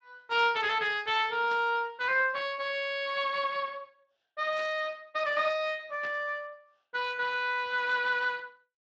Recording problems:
lossy compression; Speex, log-spectral distance 4 dB
static burst; at 1.5 s, at 4.5 s and at 6 s; peak -11 dB vs average level

